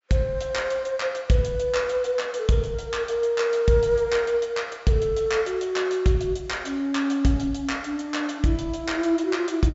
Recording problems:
treble missing; nothing above 8 kHz

